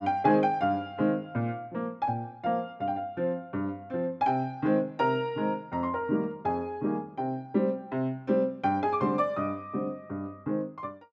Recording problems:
none

